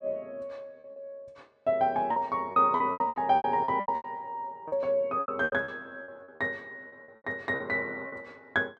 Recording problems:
packet loss; 14% of the sound replaced, filled with repeated pitch periods

